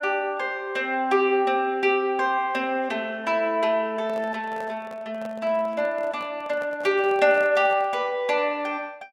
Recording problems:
microphone handling noise; from 4 to 8 s; peak -11 dB vs average level

